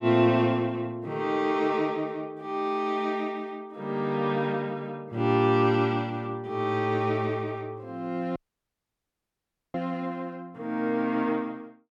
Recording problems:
dropout; at 8.5 s for 1.5 s

